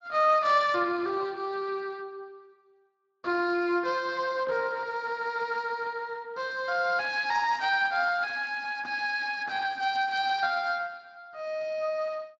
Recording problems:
lossy codec; Speex, then Speex, log-spectral distance 4 dB

